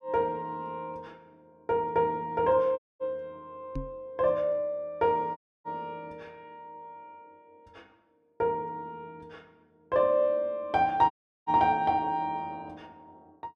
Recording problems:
dropout; at 3 s, at 5.5 s and at 11 s
microphone thump; at 4 s; peak -4 dB vs average level

